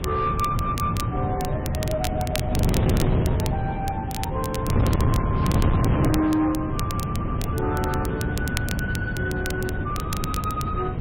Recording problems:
lossy compression; MP3, log-spectral distance 2 dB
distorted audio; soft clipping, signal-to-distortion ratio 8 dB
wind noise; below 260 Hz, SNR -2 dB
crackle; vinyl, SNR 9 dB

